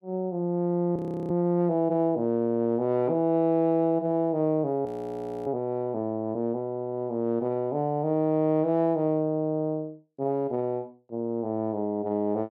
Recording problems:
frozen audio; at 1 s and at 5 s for 0.5 s

